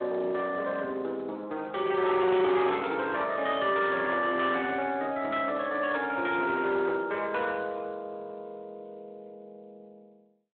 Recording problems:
telephone audio; 280 Hz to 3.7 kHz, Speex
distorted audio; hard clipping, signal-to-distortion ratio 13 dB

